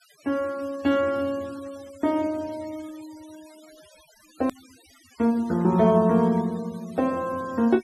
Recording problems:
noise reduction artefacts; signal-to-artefact ratio 25 dB
click at an edit; at 4.5 s

